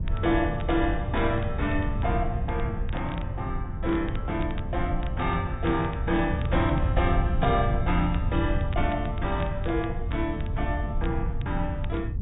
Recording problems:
treble cut off; nothing above 4 kHz
wind noise; below 110 Hz, SNR 1 dB
crackling; vinyl, SNR 21 dB

